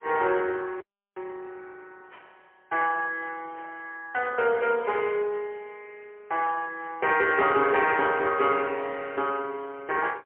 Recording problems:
phone line; 320 Hz to 3.2 kHz, AMR-NB, then MP3
audio cutting out; at 1 s

